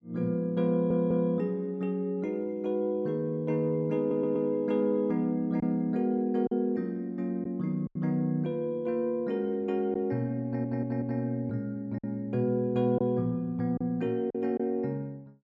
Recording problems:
lost packets; 2% of the sound replaced, filled with silence
audio stuttering; at 0.5 s, at 4 s and at 10 s

